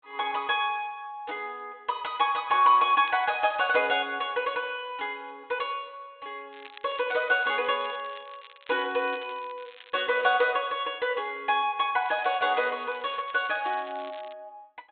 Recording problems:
low-pass filter; nothing above 4 kHz
crackle; 4 times, first at 3 s; loose cable, SNR 23 dB

